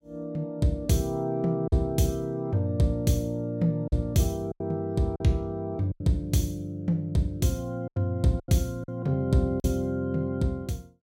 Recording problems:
lost packets; 5% of the sound replaced, filled with silence

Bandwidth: 16 kHz